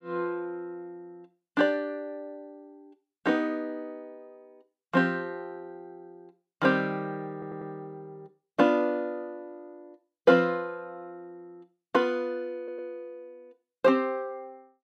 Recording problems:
stutter; at 7.5 s and at 13 s

